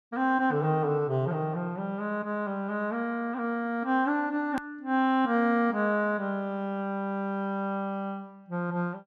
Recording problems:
click at an edit; at 4.5 s

